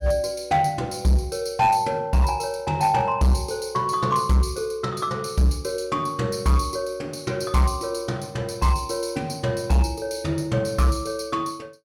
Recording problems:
distortion; hard clipping, signal-to-distortion ratio 12 dB

